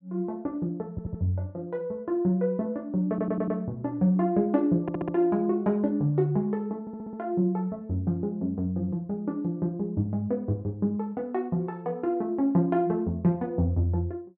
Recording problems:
audio stuttering; 4 times, first at 1 s

